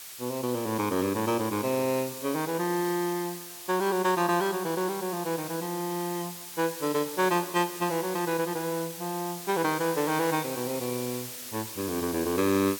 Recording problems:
hiss; slope +2 dB per octave, SNR 9 dB

